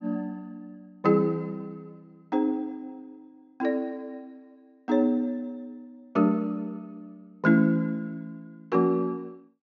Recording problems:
treble missing; nothing above 6.9 kHz

